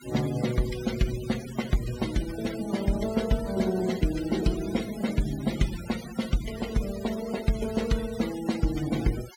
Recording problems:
denoising artefacts; signal-to-artefact ratio 13 dB

